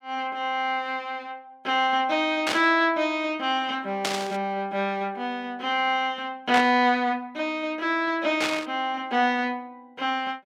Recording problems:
static burst; 4 times, first at 2.5 s; peak +2 dB vs average level

